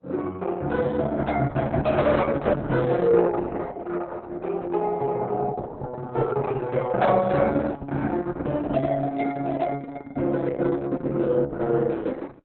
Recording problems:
codec artefacts; Opus, log-spectral distance 3 dB, nothing above 4 kHz

